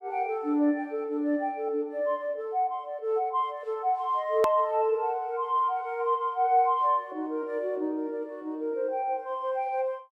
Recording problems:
click at an edit; at 4.5 s

